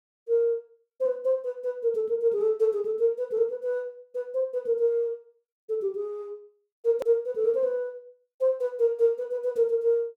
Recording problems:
edit click; at 7 s

